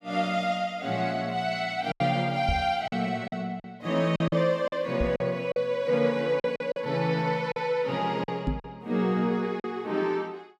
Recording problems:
lost packets; 7% of the sound replaced, filled with silence
microphone bump; at 2.5 s, at 5 s and at 8.5 s; peak +3 dB vs average level

